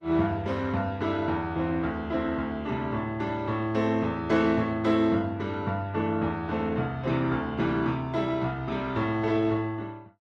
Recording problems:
lossy compression; Opus, log-spectral distance 2 dB

